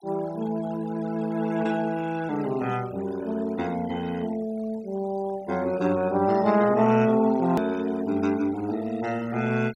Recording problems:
noise reduction artefacts; signal-to-artefact ratio 19 dB
edit click; at 7.5 s

